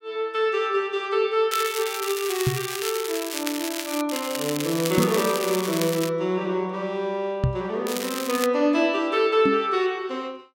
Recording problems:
crackling; from 1.5 to 4 s, from 4 to 6 s and at 8 s; loose cable, SNR 6 dB
microphone bump; 4 times, first at 2.5 s; peak +5 dB vs average level

